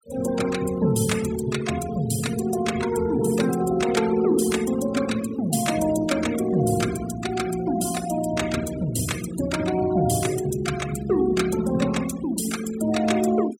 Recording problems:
denoising artefacts; signal-to-artefact ratio 13 dB

